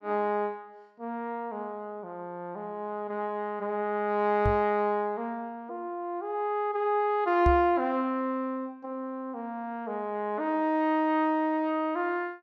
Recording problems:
knock on the microphone; at 4.5 s and at 7.5 s; peak +5 dB vs average level

